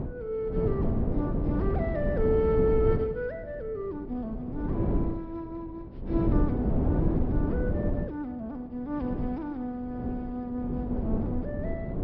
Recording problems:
low-pass filter; nothing above 5.5 kHz
wind noise; below 270 Hz, SNR -2 dB

